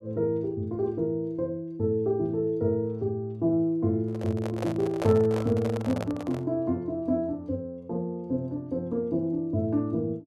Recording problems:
handling noise; from 4 to 6.5 s; peak 0 dB vs average level

